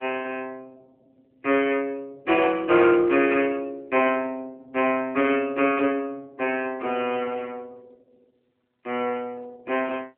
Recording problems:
telephone audio; 300 Hz to 3.1 kHz, AMR-NB

